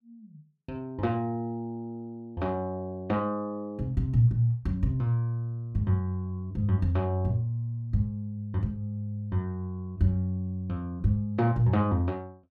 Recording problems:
none

